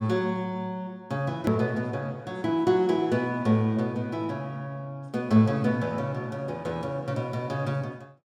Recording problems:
edit click; at 1.5 s

